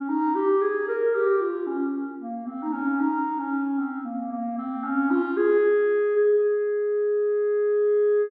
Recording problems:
none

